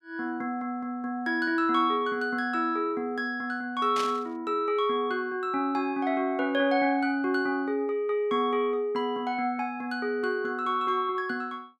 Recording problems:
static burst; at 4 s; peak -2 dB vs average level

